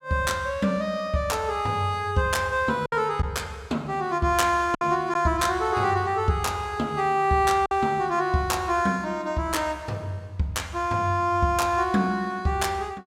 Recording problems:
packet loss; 1.5% of the sound replaced, filled with silence

